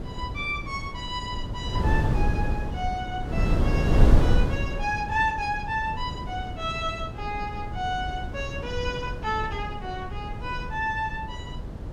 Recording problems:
wind on the microphone; below 150 Hz, SNR -1 dB

